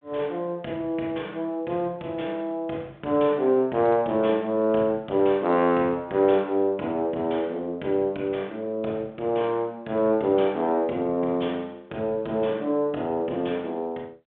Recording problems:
phone line; 190 Hz to 3.5 kHz, G.726

